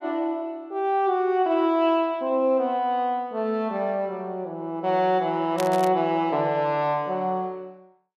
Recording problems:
crackling; at 5.5 s; loose cable, SNR 15 dB

